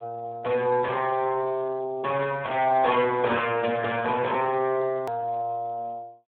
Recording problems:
telephone audio; 260 Hz to 3.6 kHz, Speex
click at an edit; at 5 s

